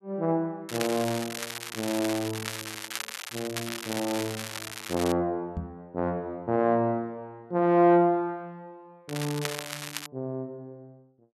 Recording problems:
crackle; from 0.5 to 5 s and at 9 s; loose cable, SNR 7 dB
microphone bump; at 5.5 s; peak -2 dB vs average level

